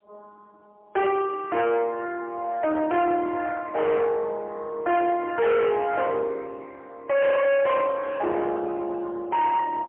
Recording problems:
phone line; 320 Hz to 3.2 kHz, AMR-NB, then MP3
distortion; soft clipping, signal-to-distortion ratio 7 dB

